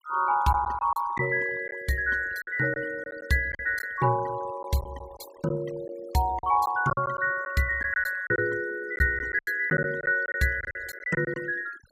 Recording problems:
noise reduction artefacts; signal-to-artefact ratio 19 dB
packet loss; 8% of the sound replaced, filled with silence

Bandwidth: 15.5 kHz